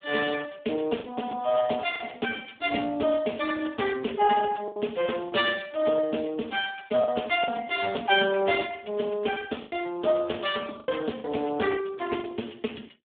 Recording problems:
telephone audio; 260 Hz to 3.5 kHz, Speex
packet loss; 4% of the sound replaced, filled with the last packet

